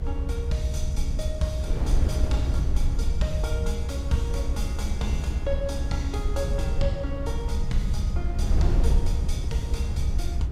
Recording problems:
mains hum; 60 Hz, harmonics up to 540 Hz, SNR 24 dB
low-frequency rumble; below 76 Hz, SNR -3 dB
wind noise; below 72 Hz, SNR -1 dB

